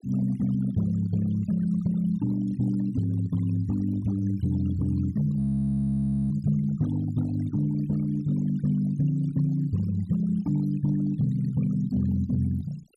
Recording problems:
denoising artefacts; signal-to-artefact ratio 21 dB
frozen audio; at 5.5 s for 1 s

